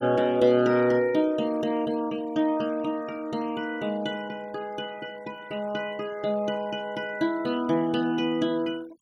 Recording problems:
noise reduction artefacts; signal-to-artefact ratio 22 dB

